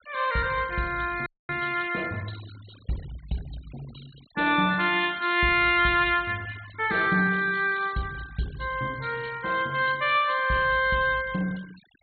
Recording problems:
treble missing; nothing above 4.3 kHz
noise reduction artefacts; signal-to-artefact ratio 22 dB
frozen audio; at 1.5 s

